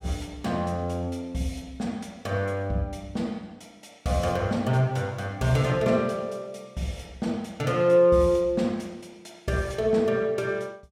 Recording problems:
none

